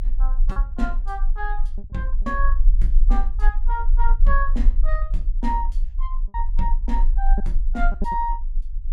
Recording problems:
low-frequency rumble; below 34 Hz, strongest tone 24 Hz, SNR -6 dB
packet loss; 3% of the sound replaced, filled with repeated pitch periods

